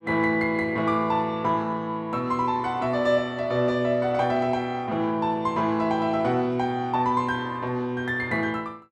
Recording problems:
none

